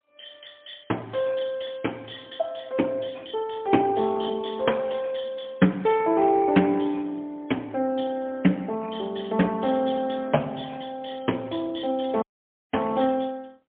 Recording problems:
phone line; 190 Hz to 3.4 kHz, AMR-NB, then MP3
dropout; at 12 s for 0.5 s

